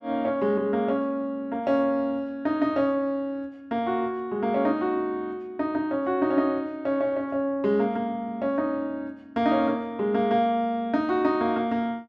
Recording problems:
none

